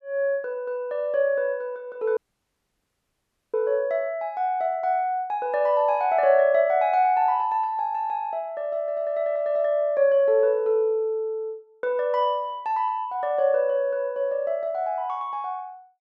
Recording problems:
audio cutting out; at 2 s for 1.5 s

